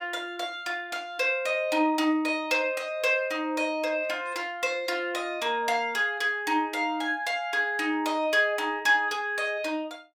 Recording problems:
none

